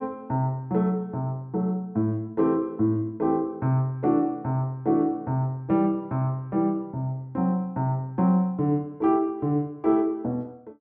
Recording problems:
none

